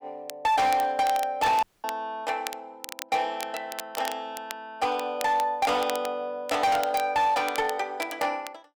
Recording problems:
distorted audio; hard clipping, signal-to-distortion ratio 11 dB
crackle; vinyl, SNR 14 dB
dropout; at 1.5 s

